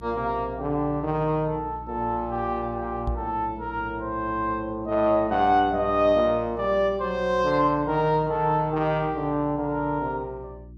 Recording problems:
hum; 60 Hz, harmonics up to 360 Hz, SNR 18 dB
microphone bump; at 3 s; peak -2 dB vs average level

